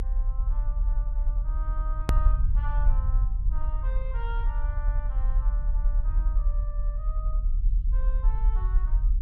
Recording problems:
low-frequency rumble; below 42 Hz, strongest tone 40 Hz, SNR -16 dB
click at an edit; at 2 s

